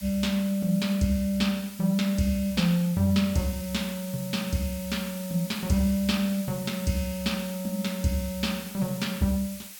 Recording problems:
hiss; slope +3 dB per octave, SNR 14 dB

